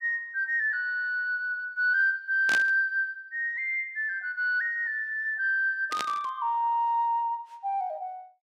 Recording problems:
static burst; at 2.5 s and at 6 s; peak 0 dB vs average level

